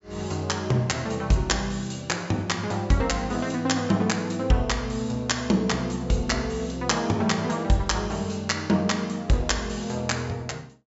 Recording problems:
treble cut off; nothing above 8 kHz

